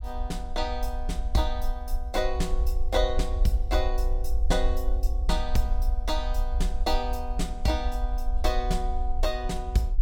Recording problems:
rumble; below 50 Hz, SNR 0 dB

